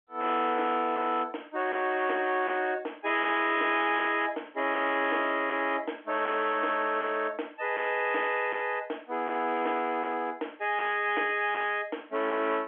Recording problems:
telephone audio; 260 Hz to 3.5 kHz, G.711
distortion; hard clipping, signal-to-distortion ratio 11 dB

